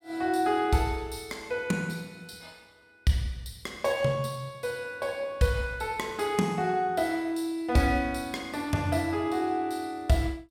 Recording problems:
none

